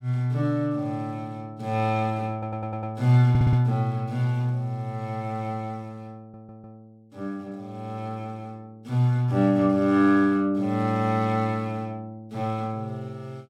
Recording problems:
stutter; at 2.5 s, at 3.5 s and at 6 s

